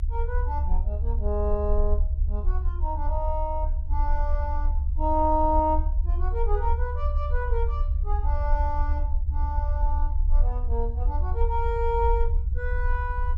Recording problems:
rumble; below 68 Hz, SNR -3 dB

